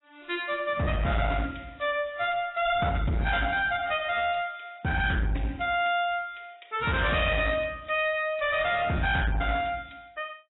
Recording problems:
codec artefacts; AAC, log-spectral distance 5 dB, nothing above 3.8 kHz
distortion; hard clipping, uneven, signal-to-distortion ratio 7 dB

